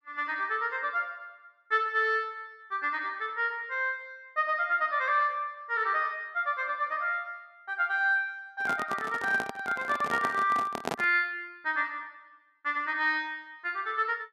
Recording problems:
microphone handling noise; from 8.5 to 11 s; peak +1 dB vs average level

